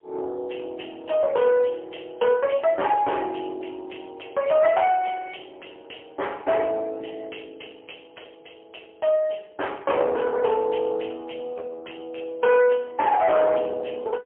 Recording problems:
phone line; 340 Hz to 3.2 kHz, AMR-NB, then MP3
distortion; soft clipping, signal-to-distortion ratio 12 dB

